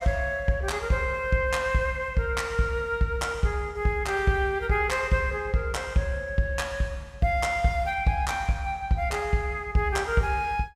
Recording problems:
none

